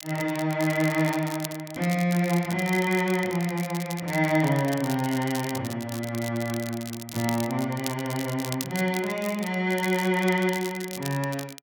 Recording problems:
crackling; vinyl, SNR 12 dB

